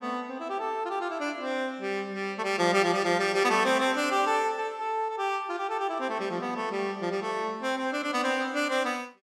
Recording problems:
none

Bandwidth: 15 kHz